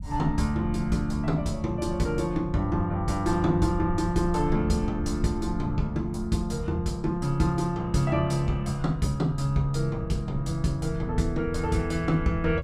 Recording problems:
rumble; below 96 Hz, SNR 11 dB

